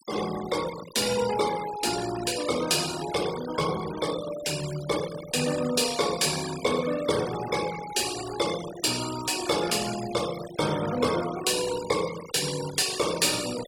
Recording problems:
noise reduction artefacts; signal-to-artefact ratio 11 dB

